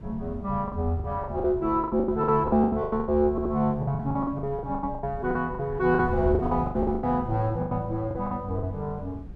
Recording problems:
wind on the microphone; below 140 Hz, SNR 13 dB
packet loss; 18% of the sound replaced, filled with the last packet
audio stuttering; at 3.5 s

